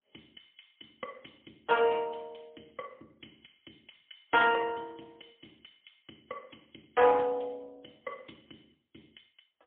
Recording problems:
telephone audio; 340 Hz to 3.3 kHz, AMR-NB, then MP3

